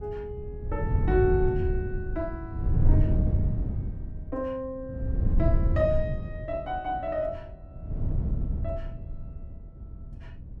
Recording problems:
wind noise; below 120 Hz, SNR -3 dB

